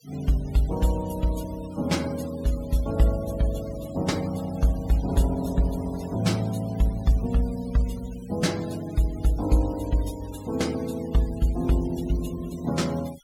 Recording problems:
noise reduction artefacts; signal-to-artefact ratio 19 dB

